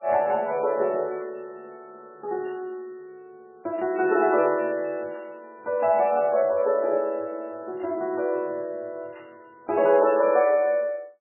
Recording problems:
lossy compression; MP3, log-spectral distance 2 dB, nothing above 2.4 kHz

